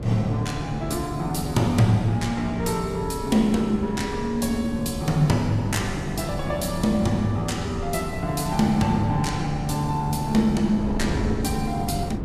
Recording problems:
lossy codec; Vorbis, log-spectral distance 2 dB, nothing above 13.1 kHz
wind on the microphone; below 290 Hz, SNR 8 dB

